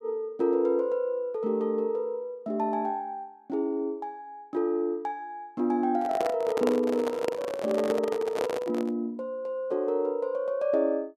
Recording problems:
handling noise; from 6 to 9 s; peak +2 dB vs average level

